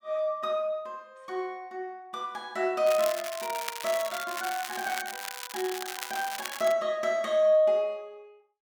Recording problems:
crackling; from 3 to 6.5 s; loose cable, SNR 8 dB

